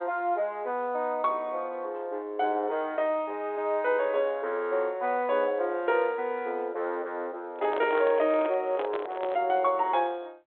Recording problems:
telephone audio; 280 Hz to 3.8 kHz, G.726
handling noise; from 7.5 to 9.5 s; peak -3 dB vs average level

